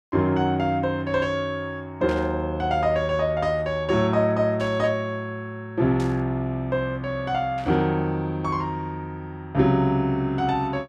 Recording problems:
static burst; 4 times, first at 2 s; peak -12 dB vs average level

